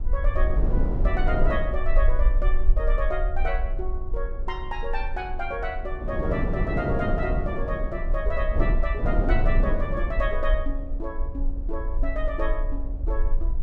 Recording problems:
low-frequency rumble; below 42 Hz, SNR -2 dB
wind noise; below 370 Hz, SNR -1 dB

